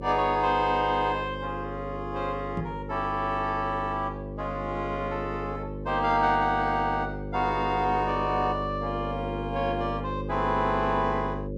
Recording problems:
mains hum; 50 Hz, harmonics up to 550 Hz, SNR 8 dB
microphone thump; at 2.5 s; peak 0 dB vs average level

